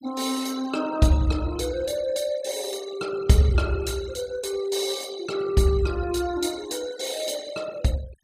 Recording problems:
denoising artefacts; signal-to-artefact ratio 19 dB

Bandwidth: 15.5 kHz